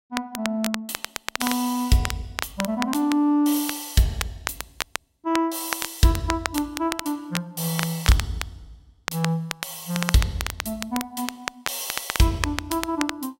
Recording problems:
crackling; vinyl, SNR 7 dB

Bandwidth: 16 kHz